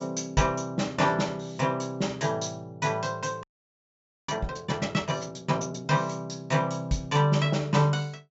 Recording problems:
treble missing; nothing above 8 kHz
audio freezing; at 3.5 s for 1 s

